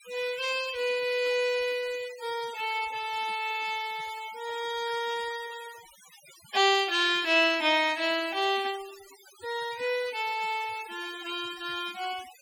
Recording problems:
noise reduction artefacts; signal-to-artefact ratio 17 dB

